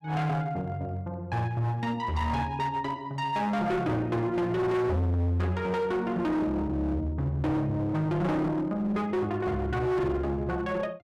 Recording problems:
distorted audio; hard clipping, uneven, signal-to-distortion ratio 7 dB

